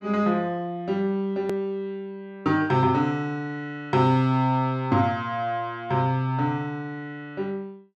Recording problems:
click at an edit; at 1.5 s

